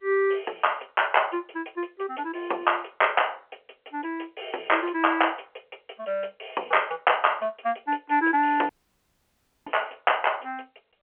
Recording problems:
telephone audio; 340 Hz to 3.2 kHz, G.711
audio cutting out; at 8.5 s for 1 s

